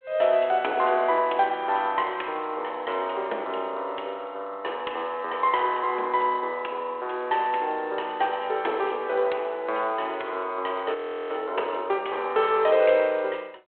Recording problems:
phone line; 340 Hz to 3.4 kHz, G.726
audio freezing; at 11 s

